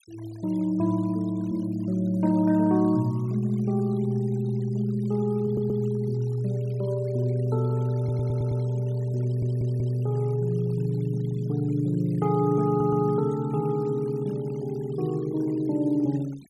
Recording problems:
denoising artefacts; signal-to-artefact ratio 26 dB
audio stuttering; 4 times, first at 5.5 s

